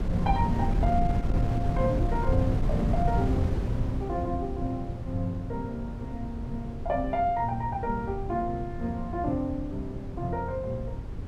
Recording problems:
wind on the microphone; below 150 Hz, SNR 1 dB

